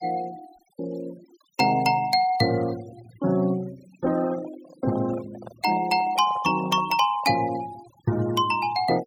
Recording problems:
denoising artefacts; signal-to-artefact ratio 20 dB
microphone handling noise; from 4 to 7.5 s; peak -12 dB vs average level

